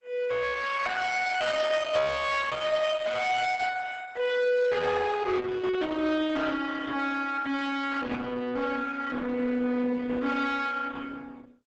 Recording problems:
codec artefacts; Opus, log-spectral distance 4 dB, nothing above 8 kHz
distorted audio; soft clipping, signal-to-distortion ratio 10 dB

